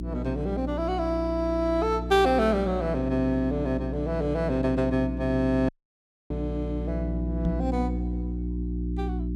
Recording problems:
electrical hum; 60 Hz, harmonics up to 360 Hz, SNR 5 dB
audio cutting out; at 5.5 s for 0.5 s
knock on the microphone; at 7.5 s; peak 0 dB vs average level

